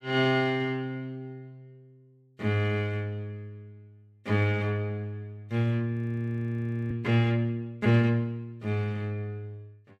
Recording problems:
audio freezing; at 6 s for 1 s

